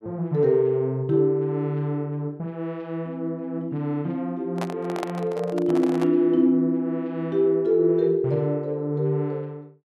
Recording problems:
microphone handling noise; from 4.5 to 6 s; peak -2 dB vs average level

